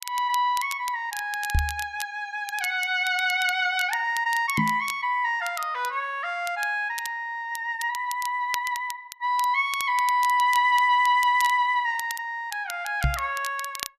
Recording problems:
crackling; vinyl, SNR 15 dB
microphone thump; at 1.5 s, at 4.5 s and at 13 s; peak +4 dB vs average level

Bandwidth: 14.5 kHz